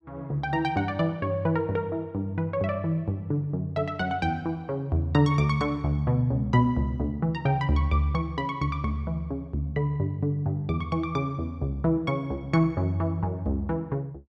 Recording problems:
none

